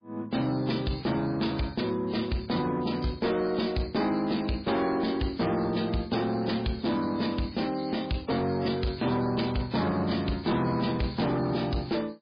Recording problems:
codec artefacts; MP3, log-spectral distance 5 dB, nothing above 5 kHz
distorted audio; soft clipping, signal-to-distortion ratio 11 dB

